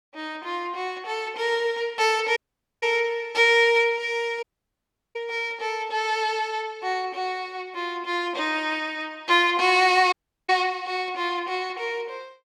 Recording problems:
audio cutting out; at 2.5 s, at 4.5 s for 0.5 s and at 10 s

